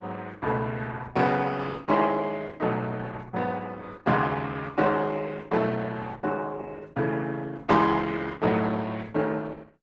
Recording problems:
lossy compression; Opus, log-spectral distance 4 dB, nothing above 7.6 kHz

